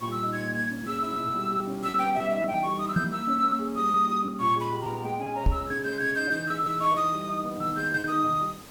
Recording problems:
background hiss; slope -4 dB per octave, SNR 22 dB
lost packets; 7% of the sound replaced, filled with repeated pitch periods
knock on the microphone; at 3 s and at 5.5 s; peak +5 dB vs average level

